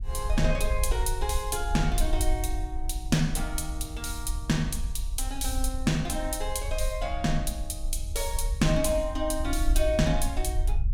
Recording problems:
rumble; below 56 Hz, SNR 3 dB

